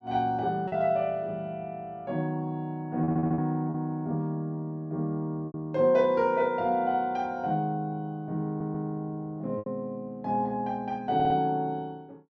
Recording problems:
packet loss; 2% of the sound replaced, filled with repeated pitch periods
stutter; at 3 s, at 8.5 s and at 11 s

